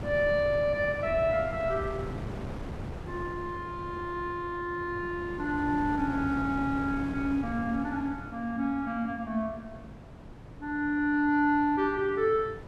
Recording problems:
wind noise; below 410 Hz, SNR 11 dB

